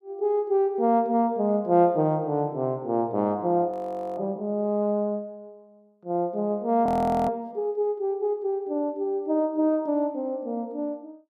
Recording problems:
frozen audio; at 3.5 s and at 7 s

